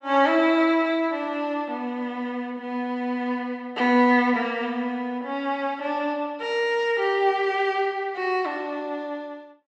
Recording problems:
none

